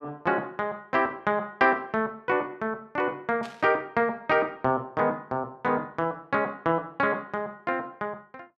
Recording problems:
static burst; at 3.5 s; peak -11 dB vs average level

